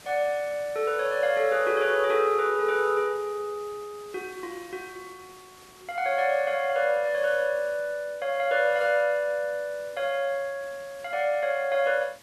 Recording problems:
hiss; slope -2 dB per octave, SNR 23 dB

